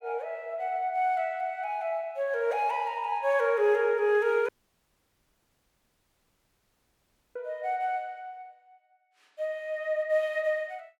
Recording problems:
dropout; at 4.5 s for 3 s

